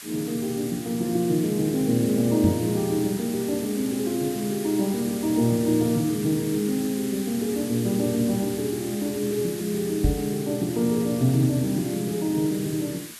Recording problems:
hiss; SNR 12 dB
microphone bump; at 2.5 s and at 10 s; peak +5 dB vs average level

